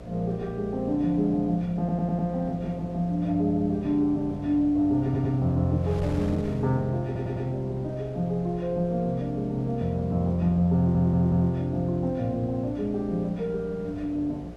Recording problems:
electrical hum; 60 Hz, harmonics up to 720 Hz, SNR 19 dB
wind noise; below 470 Hz, SNR 21 dB
stutter; 4 times, first at 2 s

